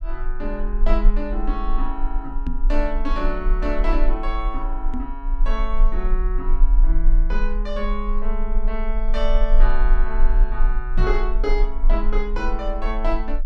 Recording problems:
rumble; below 34 Hz, strongest tone 20 Hz, SNR -4 dB
microphone thump; at 2.5 s, at 5 s and at 11 s; peak +6 dB vs average level

